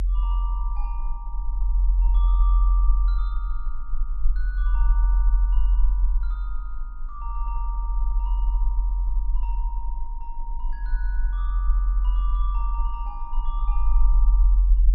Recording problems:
hum; 50 Hz, harmonics up to 950 Hz, SNR 18 dB
low-frequency rumble; below 44 Hz, strongest tone 44 Hz, SNR -16 dB

